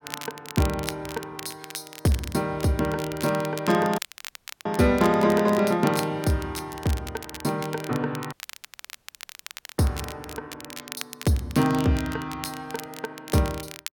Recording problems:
crackling; vinyl, SNR 14 dB
audio cutting out; at 4 s for 0.5 s and at 8.5 s for 1.5 s

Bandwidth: 17 kHz